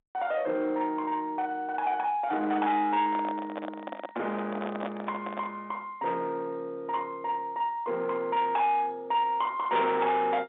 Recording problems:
telephone audio; 260 Hz to 3.8 kHz, G.711
distortion; soft clipping, signal-to-distortion ratio 11 dB
microphone handling noise; from 3 to 5.5 s; peak -2 dB vs average level

